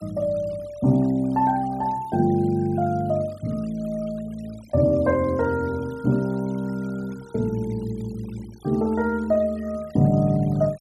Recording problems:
denoising artefacts; signal-to-artefact ratio 26 dB

